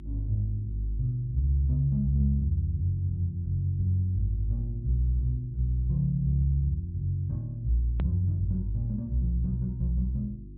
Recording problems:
low-pass filter; nothing above 4 kHz
hum; 50 Hz, harmonics up to 350 Hz, SNR 17 dB
click at an edit; at 8 s

